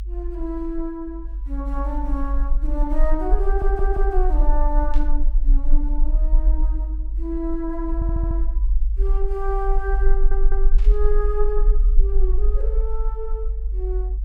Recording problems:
low-frequency rumble; below 44 Hz, strongest tone 20 Hz, SNR -6 dB
stutter; at 3.5 s, at 8 s and at 10 s
burst of static; at 5 s and at 11 s; peak -11 dB vs average level

